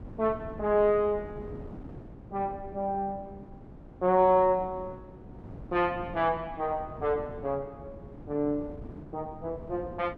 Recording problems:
wind on the microphone; below 310 Hz, SNR 16 dB

